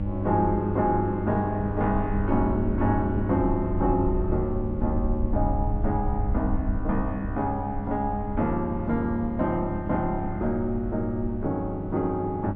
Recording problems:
electrical hum; 50 Hz, harmonics up to 900 Hz, SNR 6 dB
wind on the microphone; below 70 Hz, SNR 7 dB

